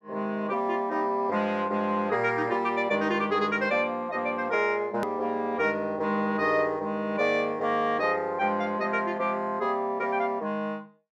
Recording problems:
click at an edit; at 5 s

